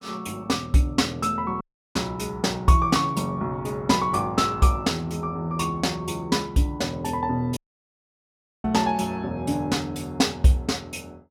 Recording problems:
audio cutting out; at 1.5 s and at 7.5 s for 1 s

